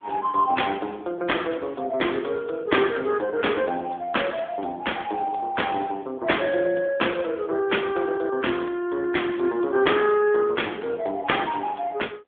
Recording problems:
telephone audio; 280 Hz to 3.5 kHz, AMR-NB

